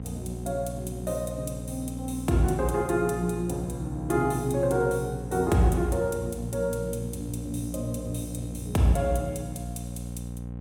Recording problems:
electrical hum; 60 Hz, harmonics up to 780 Hz, SNR 8 dB

